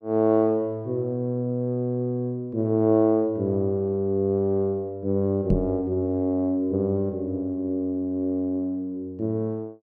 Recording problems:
microphone bump; at 5.5 s; peak +5 dB vs average level

